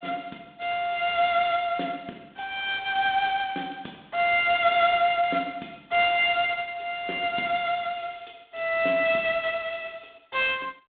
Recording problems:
phone line; 220 Hz to 3.9 kHz, G.726

